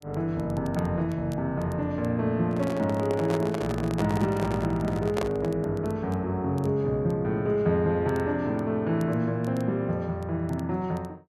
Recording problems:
crackle; vinyl, SNR 29 dB
microphone handling noise; from 2.5 to 5.5 s; peak +1 dB vs average level

